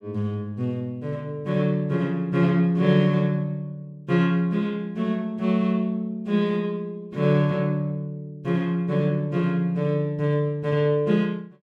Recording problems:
none

